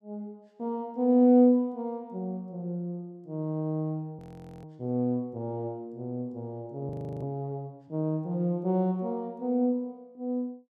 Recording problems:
frozen audio; at 4 s and at 7 s

